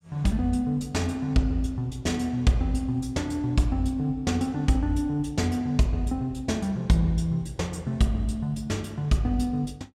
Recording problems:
none

